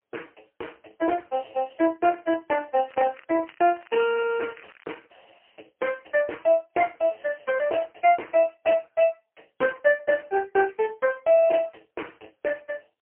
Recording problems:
phone line; 280 Hz to 3 kHz, AMR-NB, then MP3
crackling; from 3 to 5 s; loose cable, SNR 27 dB

